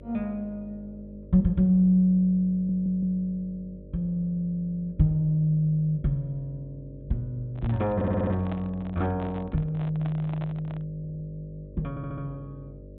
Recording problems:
treble cut off; nothing above 4 kHz
hum; 50 Hz, harmonics up to 600 Hz, SNR 19 dB
stutter; 4 times, first at 2.5 s
handling noise; from 7.5 to 11 s; peak -7 dB vs average level

